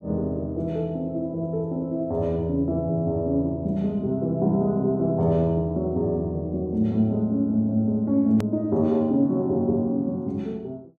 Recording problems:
click at an edit; at 8.5 s

